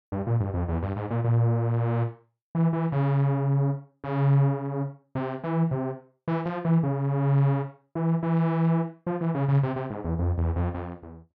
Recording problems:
none

